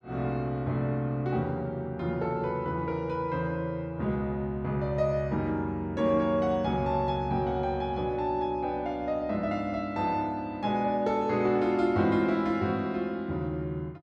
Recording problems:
none

